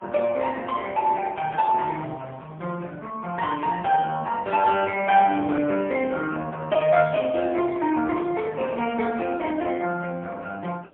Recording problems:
telephone audio; 260 Hz to 3.1 kHz, AMR-NB, then MP3
wind on the microphone; below 910 Hz, SNR 22 dB

